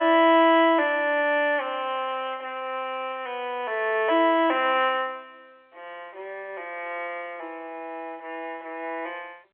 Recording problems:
telephone audio; 300 Hz to 3.4 kHz, G.711

